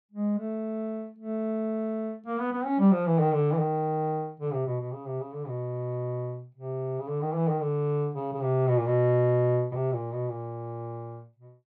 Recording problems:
none

